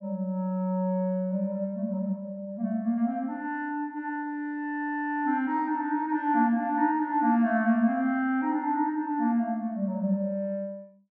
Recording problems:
none

